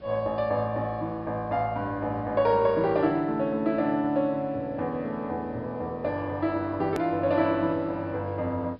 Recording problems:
treble missing; nothing above 5.3 kHz
background hiss; slope -6 dB per octave, SNR 28 dB
hard cut with a click; at 7 s

